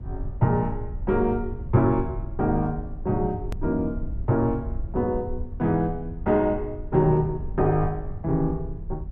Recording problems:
rumble; below 80 Hz, SNR 10 dB
click at an edit; at 3.5 s

